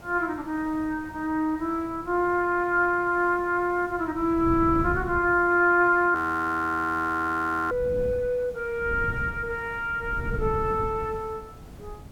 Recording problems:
background hiss; SNR 25 dB
wind on the microphone; below 170 Hz, SNR 14 dB
audio freezing; at 6 s for 1.5 s

